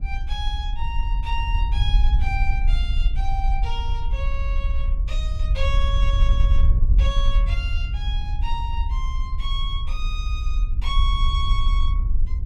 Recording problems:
wind on the microphone; below 56 Hz, SNR -8 dB

